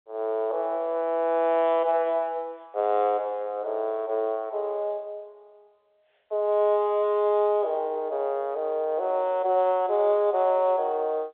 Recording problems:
phone line; 370 Hz to 3.6 kHz, G.711

